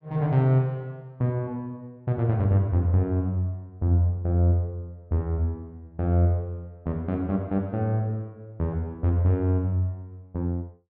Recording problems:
none

